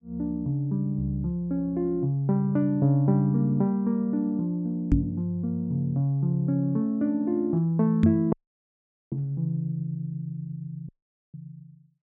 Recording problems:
microphone thump; at 5 s and at 8 s; peak +8 dB vs average level
dropout; at 8.5 s for 1 s and at 11 s

